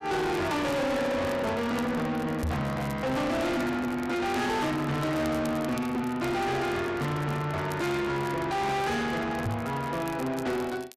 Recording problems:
distorted audio; soft clipping, signal-to-distortion ratio 6 dB
crackling; vinyl, SNR 21 dB
microphone thump; at 2.5 s and at 9.5 s; peak +2 dB vs average level

